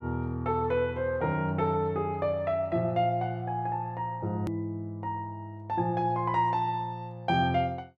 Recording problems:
hard cut with a click; at 4.5 s

